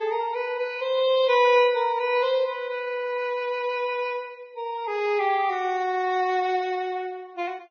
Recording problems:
codec artefacts; Vorbis, log-spectral distance 2 dB, nothing above 5.5 kHz

